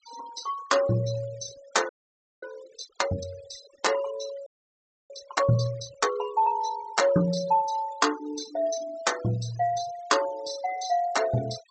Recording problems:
low-pass filter; nothing above 8 kHz
noise reduction artefacts; signal-to-artefact ratio 16 dB
frozen audio; at 2 s for 0.5 s and at 4.5 s for 0.5 s

